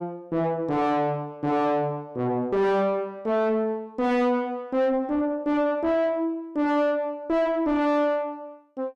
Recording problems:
distorted audio; soft clipping, signal-to-distortion ratio 5 dB

